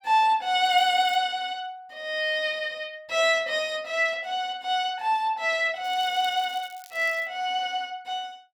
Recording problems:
crackle; at 0.5 s and from 6 to 7.5 s; loose cable, SNR 24 dB

